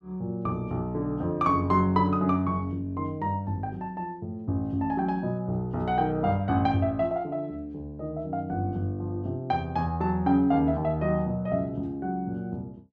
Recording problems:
none

